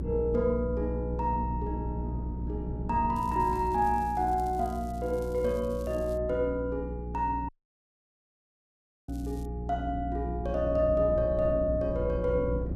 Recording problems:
electrical hum; 60 Hz, harmonics up to 360 Hz, SNR 7 dB
wind noise; below 220 Hz, SNR 13 dB
crackle; from 3 to 6 s and at 9 s; loose cable, SNR 26 dB
audio cutting out; at 7.5 s for 1.5 s

